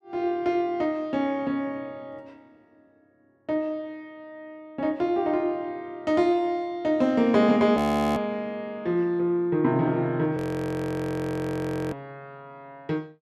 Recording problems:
audio freezing; at 8 s and at 10 s for 1.5 s

